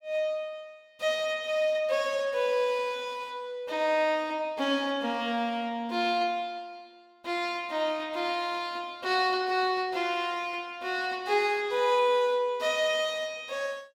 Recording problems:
none

